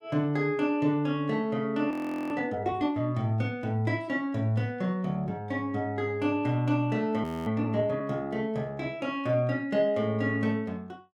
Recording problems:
audio freezing; at 2 s and at 7 s

